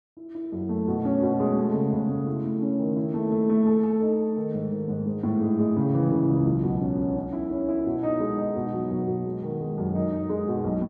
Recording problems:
none

